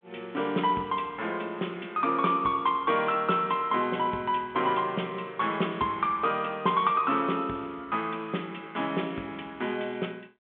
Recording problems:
phone line; 170 Hz to 3.6 kHz, G.726

